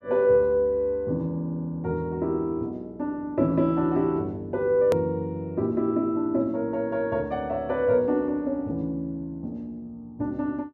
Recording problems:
hard cut with a click; at 5 s

